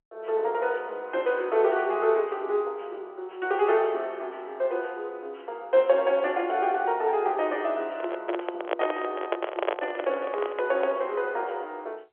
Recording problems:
phone line; 320 Hz to 3.5 kHz, G.711
microphone handling noise; from 8 to 11 s; peak +5 dB vs average level

